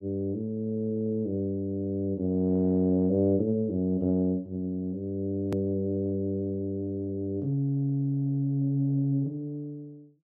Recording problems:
hard cut with a click; at 5.5 s

